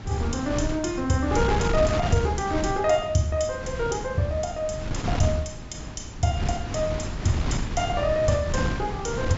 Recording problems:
low-pass filter; nothing above 8 kHz
wind on the microphone; below 290 Hz, SNR 5 dB

